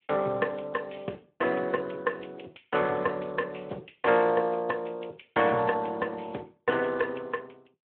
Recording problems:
telephone audio; 280 Hz to 2.7 kHz, Speex

